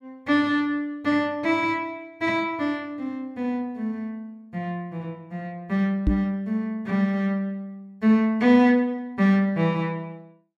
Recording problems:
microphone thump; at 6 s; peak +5 dB vs average level

